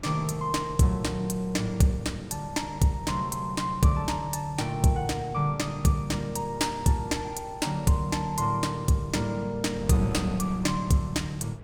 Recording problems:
wind noise; below 250 Hz, SNR 17 dB

